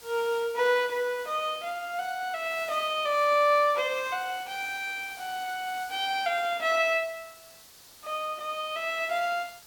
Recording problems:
background hiss; SNR 20 dB

